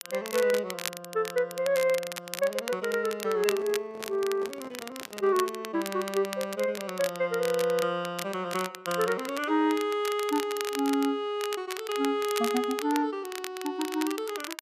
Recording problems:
crackling; vinyl, SNR 10 dB
handling noise; from 3.5 to 5.5 s; peak -11 dB vs average level

